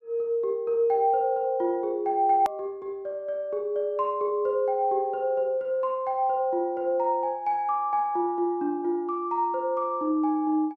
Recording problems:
edit click; at 2.5 s

